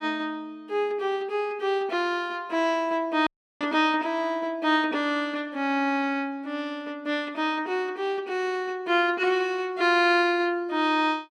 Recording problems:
dropout; at 3.5 s

